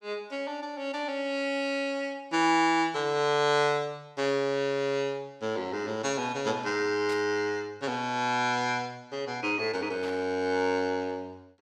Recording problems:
burst of static; at 7 s and at 10 s; peak -9 dB vs average level

